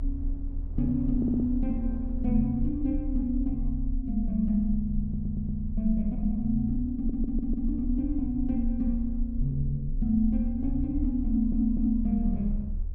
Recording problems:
rumble; below 44 Hz, strongest tone 32 Hz, SNR 6 dB
wind on the microphone; below 220 Hz, SNR 20 dB
stutter; 4 times, first at 1 s

